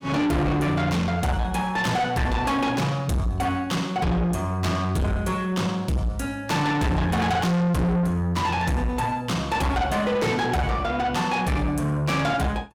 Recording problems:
distortion; soft clipping, signal-to-distortion ratio 6 dB

